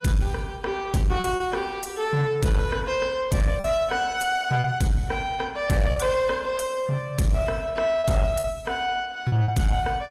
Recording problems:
lossy compression; AAC, log-spectral distance 2 dB
distorted audio; soft clipping, signal-to-distortion ratio 9 dB
packet loss; 4% of the sound replaced, filled with repeated pitch periods

